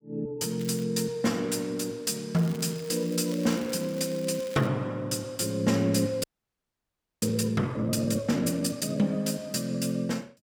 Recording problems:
crackle; at 0.5 s and from 2.5 to 4.5 s; loose cable, SNR 19 dB
frozen audio; at 6 s for 1 s

